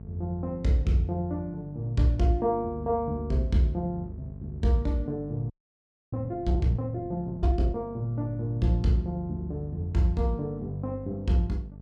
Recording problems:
hum; 50 Hz, harmonics up to 650 Hz, SNR 14 dB
audio freezing; at 5.5 s for 0.5 s

